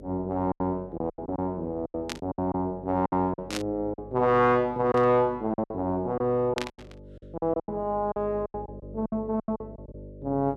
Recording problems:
electrical hum; 50 Hz, harmonics up to 600 Hz, SNR 18 dB
lost packets; 13% of the sound replaced, filled with silence
static burst; 4 times, first at 2 s; peak 0 dB vs average level

